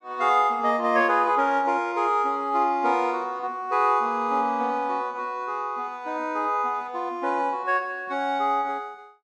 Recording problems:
none

